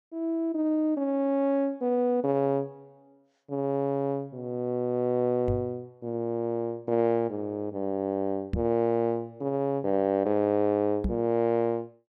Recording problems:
microphone bump; at 5.5 s, at 8.5 s and at 11 s; peak +2 dB vs average level

